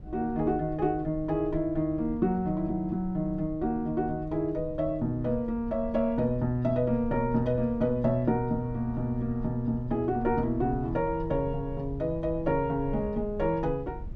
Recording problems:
low-frequency rumble; below 98 Hz, SNR 14 dB

